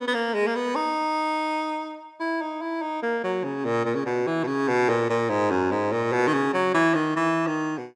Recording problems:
none

